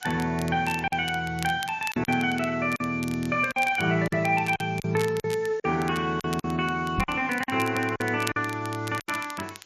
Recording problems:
lossy compression; MP3, log-spectral distance 5 dB
background hiss; slope 0 dB per octave, SNR 27 dB
crackling; vinyl, SNR 16 dB
lost packets; 8% of the sound replaced, filled with silence
microphone bump; at 7 s; peak 0 dB vs average level

